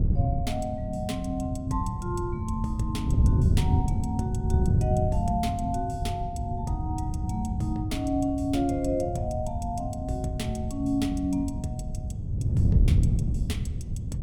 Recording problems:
wind noise; below 140 Hz, SNR -2 dB

